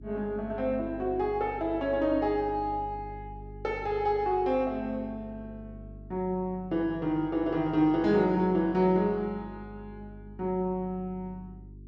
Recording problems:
electrical hum; 50 Hz, harmonics up to 400 Hz, SNR 18 dB

